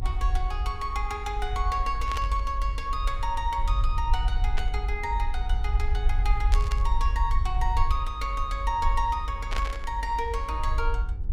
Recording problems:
hum; 50 Hz, harmonics up to 1.4 kHz, SNR 22 dB
low-frequency rumble; below 54 Hz, SNR -1 dB
static burst; 4 times, first at 2 s; peak +2 dB vs average level

